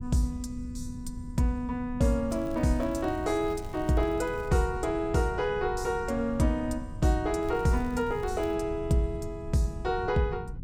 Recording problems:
low-frequency rumble; below 130 Hz, SNR 12 dB
crackling; from 2.5 to 4.5 s and from 7.5 to 8.5 s; loose cable, SNR 27 dB

